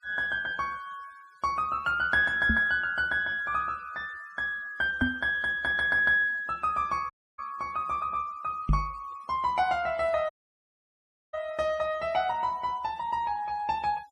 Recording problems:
denoising artefacts; signal-to-artefact ratio 26 dB
microphone bump; at 2.5 s, at 5 s and at 8.5 s; peak +5 dB vs average level
dropout; at 7 s and at 10 s for 1 s

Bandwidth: 12.5 kHz